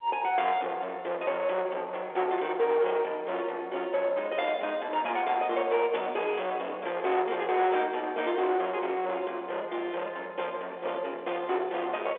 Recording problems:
telephone audio; 390 Hz to 3.7 kHz, G.711
distortion; soft clipping, signal-to-distortion ratio 10 dB

